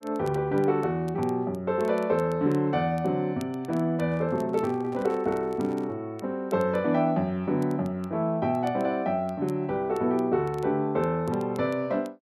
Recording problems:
crackling; vinyl, SNR 29 dB
handling noise; from 4 to 6 s; peak -12 dB vs average level

